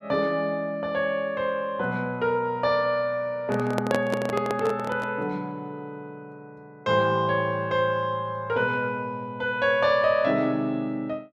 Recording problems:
handling noise; from 3.5 to 5 s; peak +2 dB vs average level

